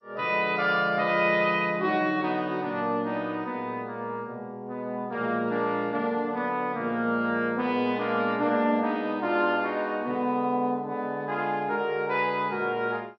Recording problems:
lossy codec; MP2, log-spectral distance 2 dB, nothing above 4.9 kHz

